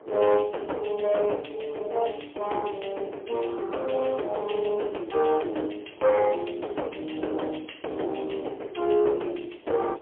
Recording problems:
telephone audio; 280 Hz to 3.3 kHz, AMR-NB, then MP3
distorted audio; soft clipping, signal-to-distortion ratio 14 dB
wind on the microphone; below 700 Hz, SNR 21 dB

